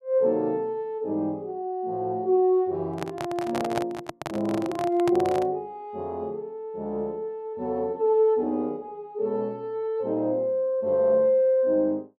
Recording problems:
handling noise; from 3 to 5.5 s; peak +1 dB vs average level

